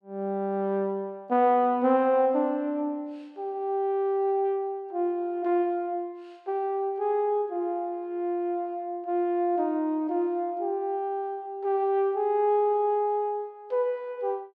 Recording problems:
none

